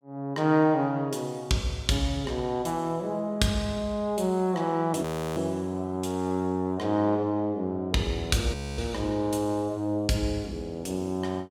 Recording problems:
audio freezing; at 5 s and at 8.5 s

